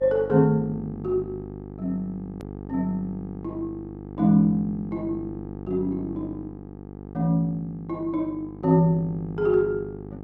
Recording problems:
hum; 50 Hz, harmonics up to 1.2 kHz, SNR 12 dB
hard cut with a click; at 2.5 s

